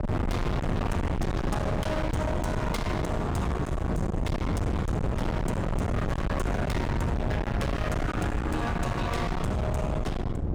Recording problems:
distorted audio; hard clipping, uneven, signal-to-distortion ratio 5 dB
wind noise; below 410 Hz, SNR -1 dB

